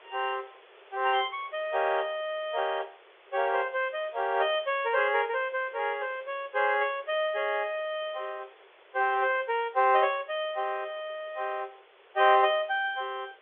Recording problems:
telephone audio; 300 Hz to 3.6 kHz, G.711
background hiss; SNR 26 dB

